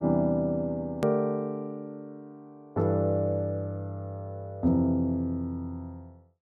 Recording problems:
click at an edit; at 1 s

